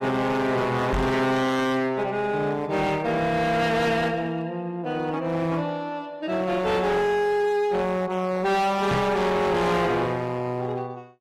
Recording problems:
lossy compression; AAC, log-spectral distance 2 dB, nothing above 14.6 kHz
distortion; hard clipping, signal-to-distortion ratio 7 dB
microphone thump; at 1 s and at 9 s; peak +2 dB vs average level

